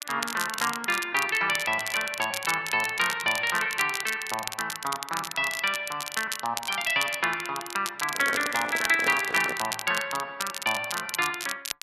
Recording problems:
crackling; vinyl, SNR 8 dB
handling noise; from 8 to 9.5 s; peak -3 dB vs average level

